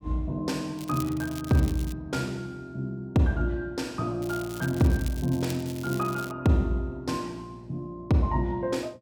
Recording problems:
crackle; from 1 to 2 s and from 4 to 6.5 s; loose cable, SNR 16 dB

